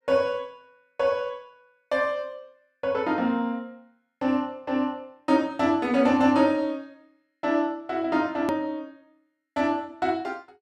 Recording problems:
edit click; at 8.5 s

